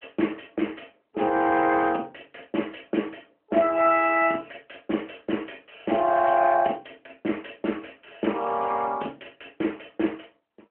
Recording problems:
phone line; 240 Hz to 3.1 kHz, AMR-NB

